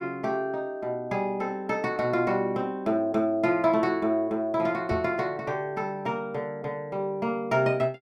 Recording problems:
microphone thump; at 5 s; peak -3 dB vs average level

